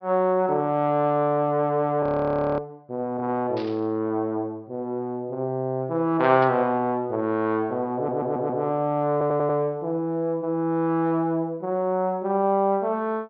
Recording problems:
treble missing; nothing above 5.5 kHz
audio freezing; at 2 s for 0.5 s
burst of static; at 3.5 s and at 6.5 s; peak -12 dB vs average level
audio stuttering; at 8 s and at 9 s

